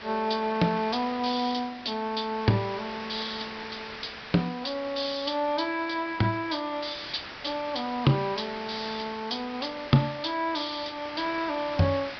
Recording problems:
treble missing; nothing above 5.5 kHz
background hiss; SNR 12 dB

